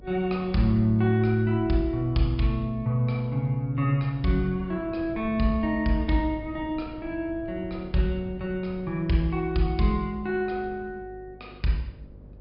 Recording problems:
low-pass filter; nothing above 5.5 kHz
hum; 50 Hz, harmonics up to 600 Hz, SNR 22 dB
wind noise; below 180 Hz, SNR 19 dB

